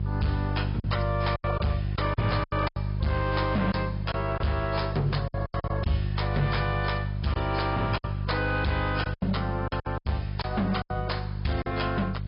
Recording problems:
low-pass filter; nothing above 5.2 kHz
lossy compression; AAC, log-spectral distance 4 dB
distortion; hard clipping, signal-to-distortion ratio 6 dB
electrical hum; 50 Hz, harmonics up to 400 Hz, SNR 2 dB
background hiss; SNR 28 dB
packet loss; 10% of the sound replaced, filled with silence

